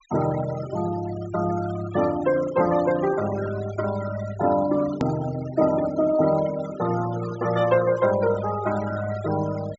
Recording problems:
treble cut off; nothing above 8 kHz
denoising artefacts; signal-to-artefact ratio 14 dB
click at an edit; at 5 s

